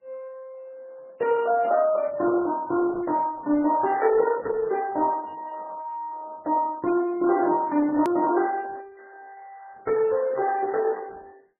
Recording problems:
lossy compression; Opus, then MP3, log-spectral distance 3 dB, nothing above 13.1 kHz
hard cut with a click; at 8 s

